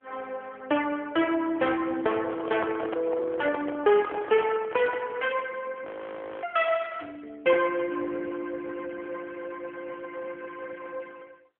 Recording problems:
telephone audio; 260 Hz to 3.3 kHz, AMR-NB
microphone handling noise; from 2 to 5 s; peak -3 dB vs average level
audio freezing; at 6 s for 0.5 s

